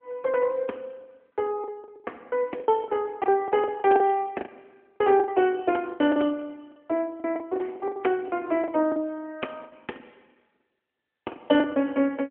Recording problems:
telephone audio; 220 Hz to 3.3 kHz, AMR-NB
packet loss; 14% of the sound replaced, filled with the last packet

